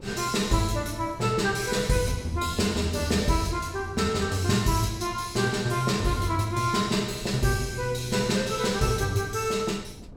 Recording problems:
wind noise; below 250 Hz, SNR 18 dB

